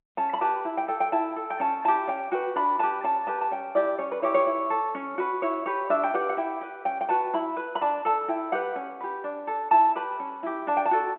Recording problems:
phone line; 280 Hz to 3.5 kHz, G.711

